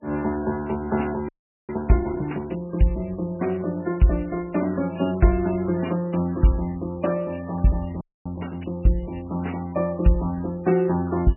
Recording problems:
lossy codec; MP3, log-spectral distance 4 dB, nothing above 2.7 kHz
frozen audio; at 1.5 s and at 8 s

